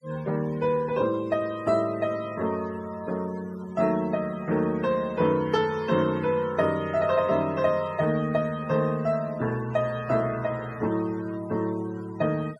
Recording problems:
noise reduction artefacts; signal-to-artefact ratio 21 dB

